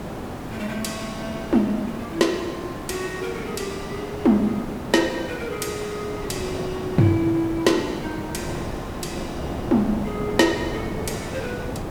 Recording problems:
background hiss; slope -7 dB per octave, SNR 9 dB
wind noise; below 570 Hz, SNR 11 dB

